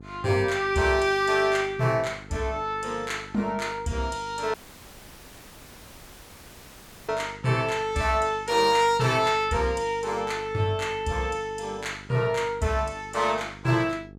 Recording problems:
electrical hum; 50 Hz, harmonics up to 850 Hz, SNR 20 dB
audio cutting out; at 4.5 s for 2.5 s

